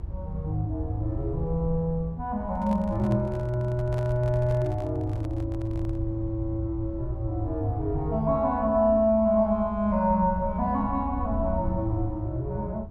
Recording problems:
rumble; below 82 Hz, SNR 9 dB
microphone handling noise; from 2.5 to 6 s; peak -10 dB vs average level

